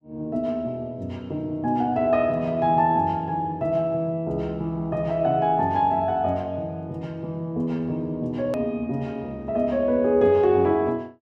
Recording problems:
click at an edit; at 8.5 s

